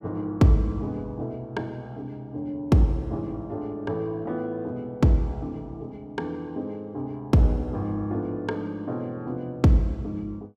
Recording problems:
none

